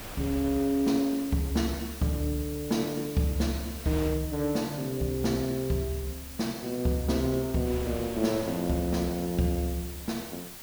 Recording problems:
background hiss; slope 0 dB per octave, SNR 13 dB
wind on the microphone; below 2 kHz, SNR 18 dB

